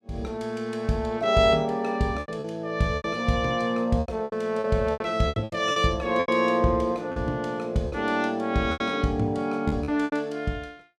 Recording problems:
lost packets; 10% of the sound replaced, filled with repeated pitch periods

